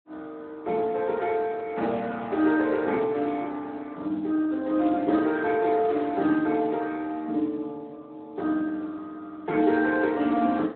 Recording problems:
phone line; 150 Hz to 3.8 kHz, Speex

